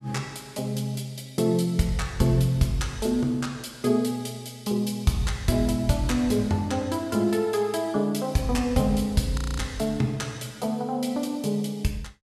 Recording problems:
frozen audio; at 9.5 s

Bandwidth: 14.5 kHz